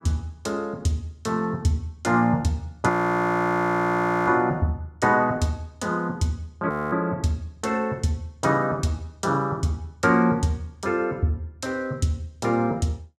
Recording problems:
audio freezing; at 3 s for 1.5 s and at 6.5 s

